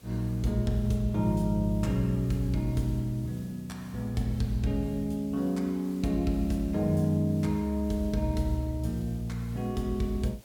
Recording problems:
hiss; SNR 25 dB

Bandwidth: 17 kHz